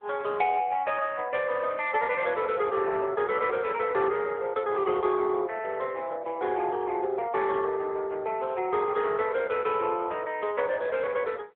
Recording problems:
phone line; 340 Hz to 3.5 kHz, AMR-NB

